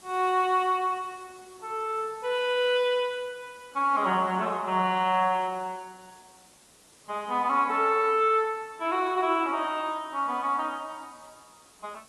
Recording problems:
lossy codec; AAC, log-spectral distance 6 dB
background hiss; slope -2 dB per octave, SNR 26 dB

